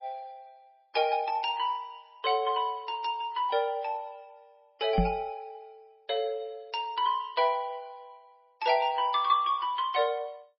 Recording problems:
lossy codec; MP3, log-spectral distance 2 dB, nothing above 4.5 kHz
microphone bump; at 5 s; peak +6 dB vs average level

